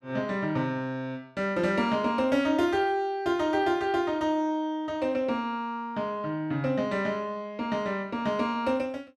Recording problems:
none

